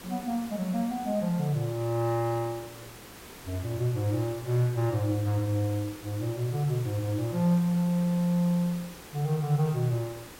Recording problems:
background hiss; slope -4 dB per octave, SNR 16 dB

